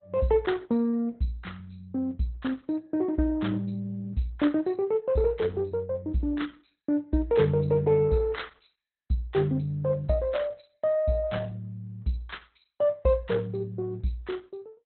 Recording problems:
lossy compression; Opus, log-spectral distance 4 dB, nothing above 4 kHz

